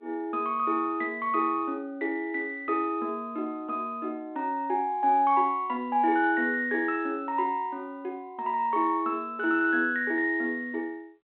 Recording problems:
telephone audio; 260 Hz to 3.7 kHz, G.726

